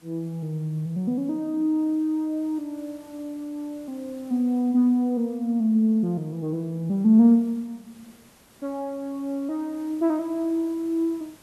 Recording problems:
hiss; slope -3 dB per octave, SNR 29 dB

